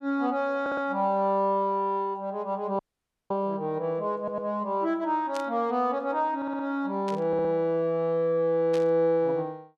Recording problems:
audio stuttering; 4 times, first at 0.5 s
audio cutting out; at 3 s for 0.5 s
static burst; at 5.5 s, at 7 s and at 8.5 s; peak -9 dB vs average level

